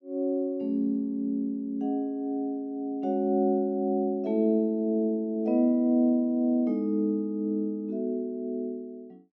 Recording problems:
none

